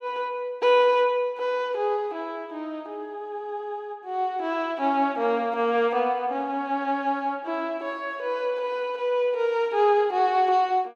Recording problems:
none

